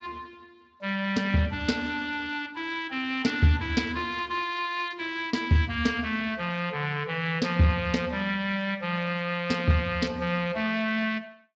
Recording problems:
lossy codec; Speex, log-spectral distance 4 dB

